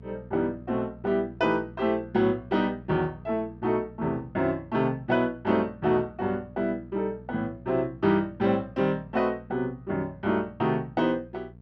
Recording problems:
hum; 60 Hz, harmonics up to 720 Hz, SNR 20 dB

